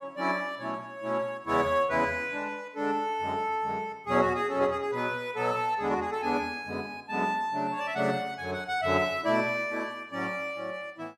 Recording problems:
none

